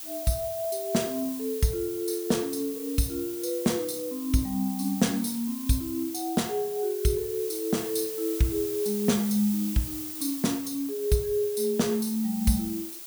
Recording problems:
hiss; slope +1 dB per octave, SNR 9 dB

